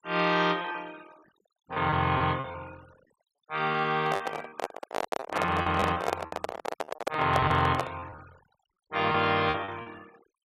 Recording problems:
noise reduction artefacts; signal-to-artefact ratio 22 dB
lost packets; 9% of the sound replaced, filled with repeated pitch periods
handling noise; from 4 to 8 s; peak +3 dB vs average level

